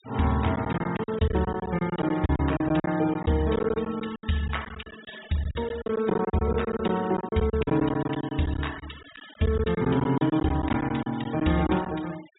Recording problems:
treble cut off; nothing above 4 kHz
denoising artefacts; signal-to-artefact ratio 18 dB
lost packets; 14% of the sound replaced, filled with silence

